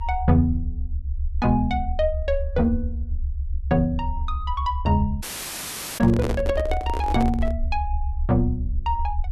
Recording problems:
low-frequency rumble; below 72 Hz, strongest tone 26 Hz, SNR 5 dB
audio cutting out; at 5 s for 1 s
microphone handling noise; from 6 to 7.5 s; peak 0 dB vs average level

